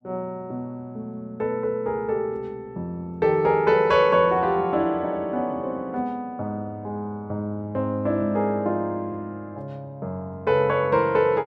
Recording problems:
none

